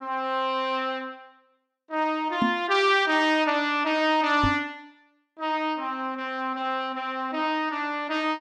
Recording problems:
knock on the microphone; at 2.5 s and at 4.5 s; peak +3 dB vs average level

